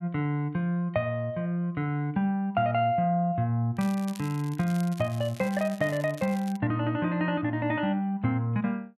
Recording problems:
crackle; from 4 to 6.5 s; loose cable, SNR 20 dB

